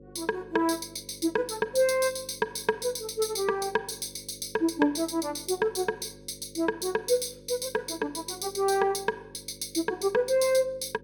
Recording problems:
hum; 50 Hz, harmonics up to 550 Hz, SNR 22 dB

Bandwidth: 17.5 kHz